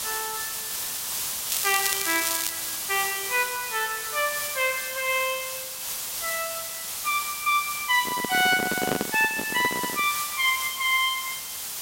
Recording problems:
hiss; slope +2 dB per octave, SNR 4 dB
crackling; from 1.5 to 2.5 s; loose cable, SNR 2 dB
handling noise; from 8 to 10 s; peak +3 dB vs average level

